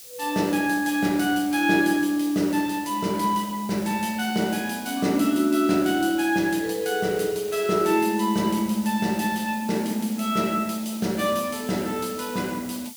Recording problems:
hiss; SNR 17 dB

